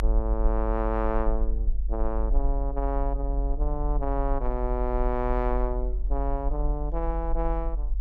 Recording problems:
rumble; below 46 Hz, strongest tone 44 Hz, SNR -1 dB

